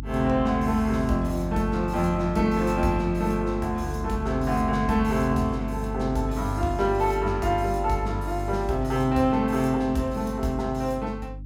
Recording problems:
electrical hum; 50 Hz, harmonics up to 300 Hz, SNR 9 dB

